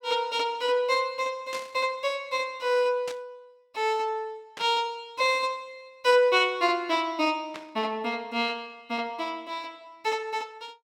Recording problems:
static burst; 4 times, first at 1.5 s; peak -7 dB vs average level

